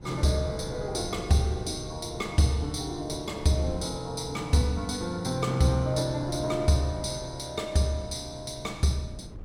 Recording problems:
wind noise; below 190 Hz, SNR 17 dB

